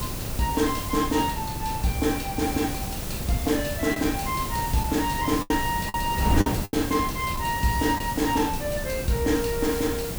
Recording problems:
hiss; slope +3 dB per octave, SNR 9 dB
wind on the microphone; below 310 Hz, SNR 6 dB
lost packets; 3% of the sound replaced, filled with the last packet

